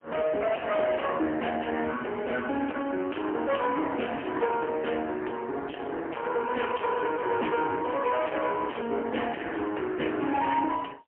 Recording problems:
telephone audio; 240 Hz to 2.6 kHz, AMR-NB, then MP3
distortion; soft clipping, signal-to-distortion ratio 7 dB

